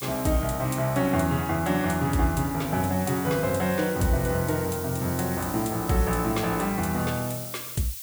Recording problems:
background hiss; slope +6 dB per octave, SNR 10 dB

